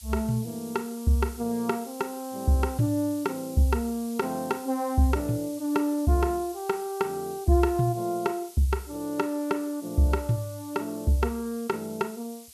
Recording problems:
background hiss; SNR 17 dB

